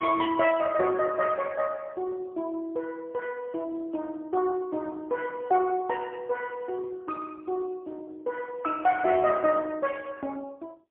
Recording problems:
telephone audio; 260 Hz to 2.8 kHz, AMR-NB, then MP3

